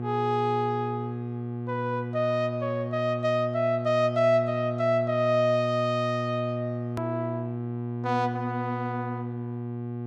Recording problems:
hum; 60 Hz, harmonics up to 1.2 kHz, SNR 5 dB
edit click; at 7 s

